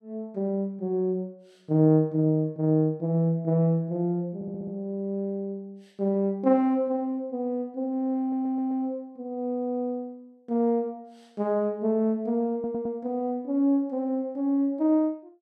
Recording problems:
audio stuttering; at 4.5 s, at 8 s and at 13 s

